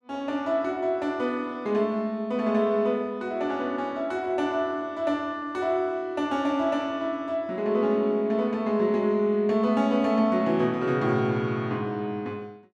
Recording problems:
none

